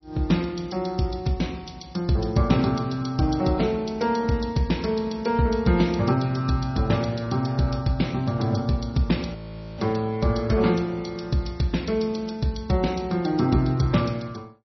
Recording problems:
codec artefacts; MP3, log-spectral distance 4 dB, nothing above 5.8 kHz
audio freezing; at 9.5 s

